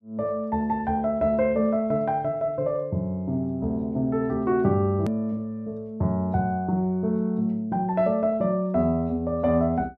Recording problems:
edit click; at 5 s

